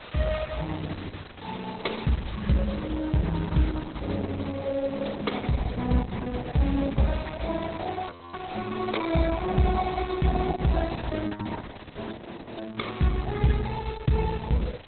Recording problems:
codec artefacts; Opus, log-spectral distance 15 dB, nothing above 4.1 kHz
background hiss; SNR 18 dB
wind on the microphone; below 810 Hz, SNR 25 dB
audio freezing; at 8 s and at 12 s

